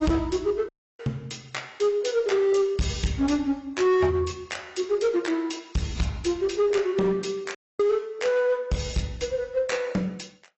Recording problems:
codec artefacts; AAC, log-spectral distance 4 dB, nothing above 7.8 kHz
distortion; hard clipping, uneven, signal-to-distortion ratio 11 dB
dropout; at 0.5 s and at 7.5 s

